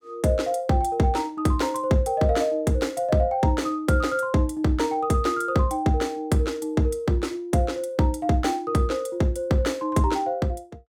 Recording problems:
none

